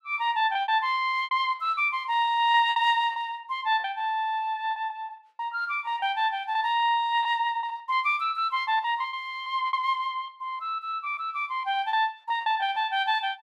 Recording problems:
packet loss; 10% of the sound replaced, filled with repeated pitch periods

